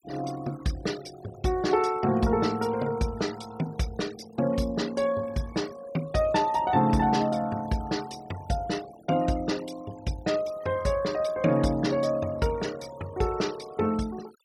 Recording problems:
noise reduction artefacts; signal-to-artefact ratio 19 dB

